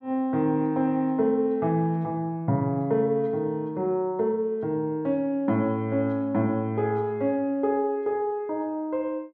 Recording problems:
none

